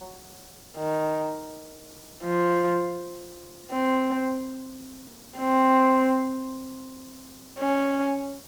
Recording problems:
hiss; SNR 21 dB
hard cut with a click; at 5 s

